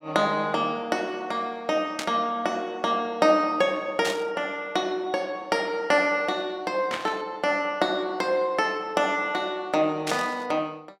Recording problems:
burst of static; 4 times, first at 2 s; peak 0 dB vs average level

